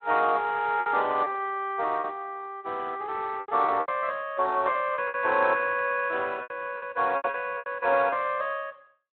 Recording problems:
telephone audio; 260 Hz to 3.5 kHz, Speex
packet loss; 9% of the sound replaced, filled with repeated pitch periods

